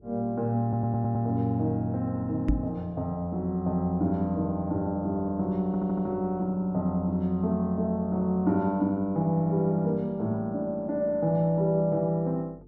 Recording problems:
hum; 50 Hz, harmonics up to 450 Hz, SNR 28 dB
audio stuttering; at 0.5 s and at 5.5 s
knock on the microphone; at 2.5 s; peak +5 dB vs average level

